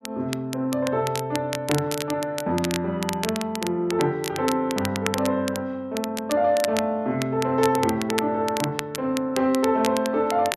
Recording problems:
crackling; vinyl, SNR 9 dB

